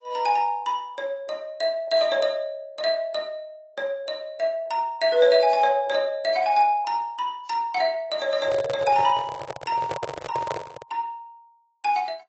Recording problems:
lossy codec; AAC, log-spectral distance 2 dB, nothing above 7.8 kHz
handling noise; from 8.5 to 11 s; peak -1 dB vs average level

